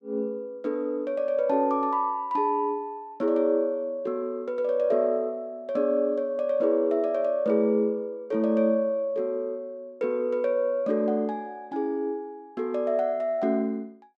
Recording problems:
none

